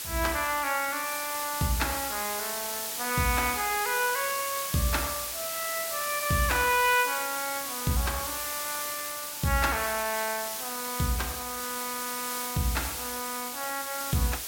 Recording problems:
hiss; slope +1 dB per octave, SNR 2 dB

